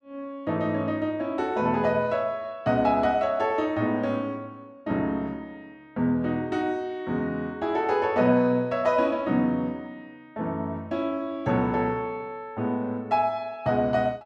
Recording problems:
none

